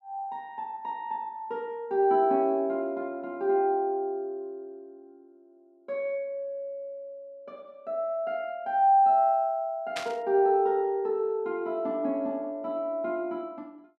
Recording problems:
static burst; at 10 s; peak -2 dB vs average level

